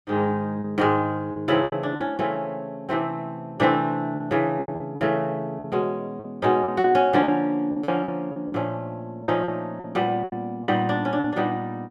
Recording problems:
packet loss; 9% of the sound replaced, filled with repeated pitch periods

